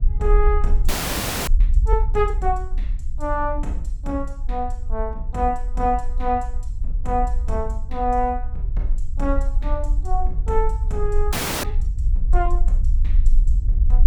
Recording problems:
low-frequency rumble; below 48 Hz, SNR -1 dB
audio freezing; at 1 s for 0.5 s and at 11 s

